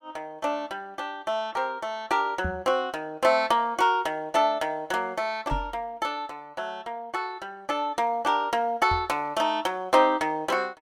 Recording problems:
microphone bump; at 2.5 s, at 5.5 s and at 9 s; peak -2 dB vs average level

